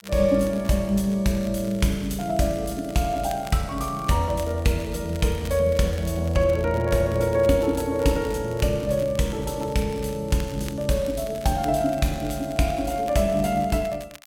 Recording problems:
crackling; vinyl, SNR 22 dB

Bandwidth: 16.5 kHz